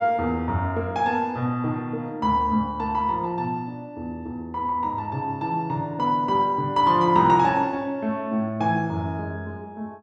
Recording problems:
none

